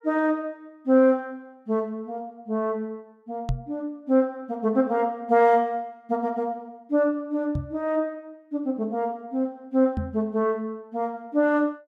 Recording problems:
microphone thump; at 3.5 s, at 7.5 s and at 10 s; peak +1 dB vs average level

